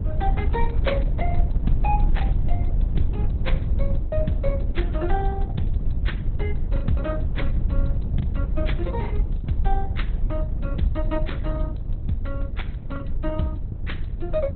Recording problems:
codec artefacts; Opus, log-spectral distance 2 dB, nothing above 4 kHz
rumble; below 74 Hz, SNR -5 dB
lost packets; 2% of the sound replaced, filled with the last packet

